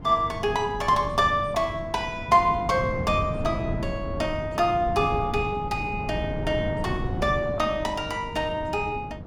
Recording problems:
hum; 50 Hz, harmonics up to 600 Hz, SNR 18 dB
wind noise; below 260 Hz, SNR 8 dB

